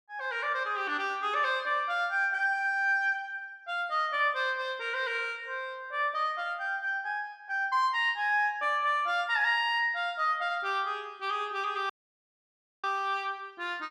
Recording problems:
audio cutting out; at 12 s for 1 s

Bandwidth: 12.5 kHz